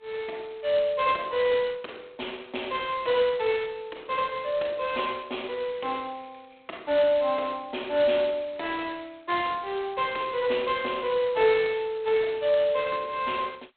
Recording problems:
telephone audio; 300 Hz to 3.6 kHz, G.726

